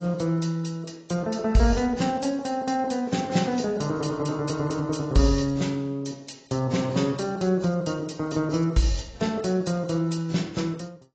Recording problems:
codec artefacts; AAC, log-spectral distance 4 dB, nothing above 7.6 kHz

